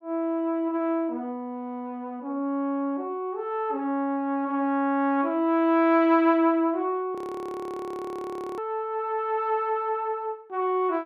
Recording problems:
audio freezing; at 7 s for 1.5 s

